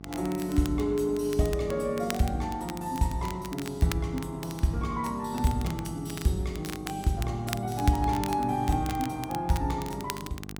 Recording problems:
electrical hum; 50 Hz, harmonics up to 1.1 kHz, SNR 14 dB
crackle; vinyl, SNR 14 dB

